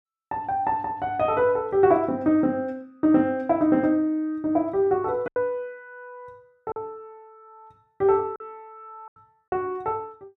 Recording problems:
lost packets; 3% of the sound replaced, filled with silence

